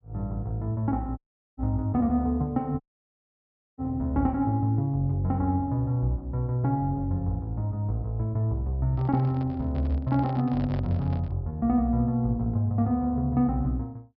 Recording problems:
low-pass filter; nothing above 5.5 kHz
audio cutting out; at 1 s and at 3 s for 1 s
handling noise; from 9 to 11 s; peak -9 dB vs average level

